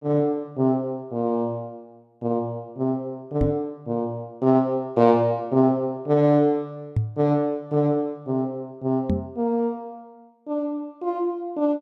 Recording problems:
microphone bump; at 3.5 s, at 7 s and at 9 s; peak +4 dB vs average level

